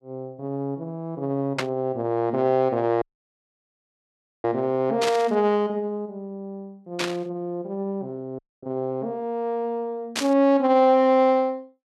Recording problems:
static burst; 4 times, first at 1.5 s; peak +2 dB vs average level
audio cutting out; at 3 s for 1.5 s and at 8.5 s

